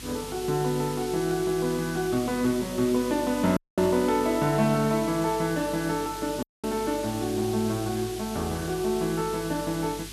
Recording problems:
electrical hum; 50 Hz, harmonics up to 400 Hz, SNR 20 dB
background hiss; SNR 13 dB
audio cutting out; at 3.5 s and at 6.5 s

